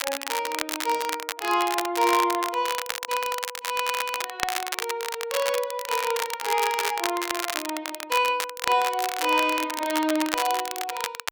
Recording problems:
crackling; vinyl, SNR 4 dB

